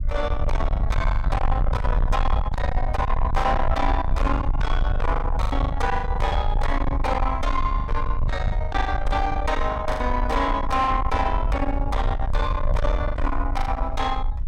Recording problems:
distortion; soft clipping, signal-to-distortion ratio 6 dB
rumble; below 74 Hz, SNR 1 dB
packet loss; 11% of the sound replaced, filled with the last packet

